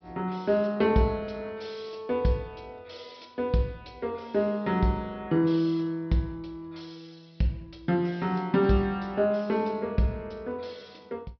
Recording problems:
low-pass filter; nothing above 5.5 kHz

